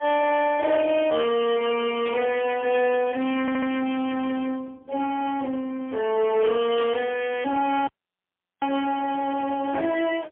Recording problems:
phone line; 280 Hz to 3.1 kHz, AMR-NB, then MP3
distorted audio; soft clipping, signal-to-distortion ratio 11 dB
burst of static; at 2 s and at 7 s; peak -8 dB vs average level
audio stuttering; at 3.5 s
audio cutting out; at 8 s for 0.5 s

